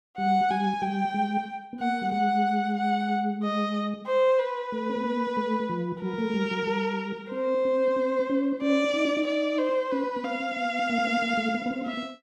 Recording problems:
none

